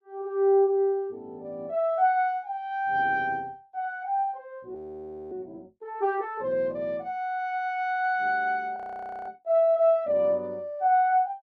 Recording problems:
frozen audio; at 5 s for 0.5 s and at 9 s for 0.5 s

